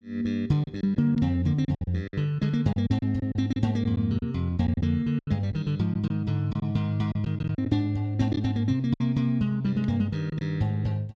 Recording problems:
lost packets; 8% of the sound replaced, filled with silence

